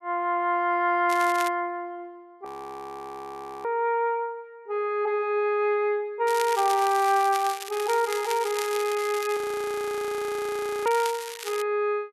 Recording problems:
crackling; at 1 s and from 6.5 to 12 s; loose cable, SNR 12 dB
frozen audio; at 2.5 s for 1 s and at 9.5 s for 1.5 s

